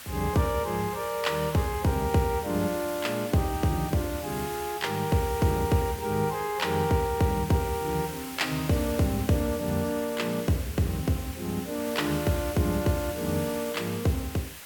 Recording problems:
hiss; slope 0 dB per octave, SNR 12 dB

